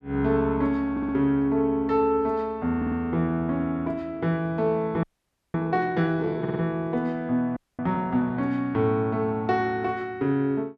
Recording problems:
stutter; at 1 s, at 3 s and at 6.5 s
frozen audio; at 5 s for 0.5 s and at 7.5 s

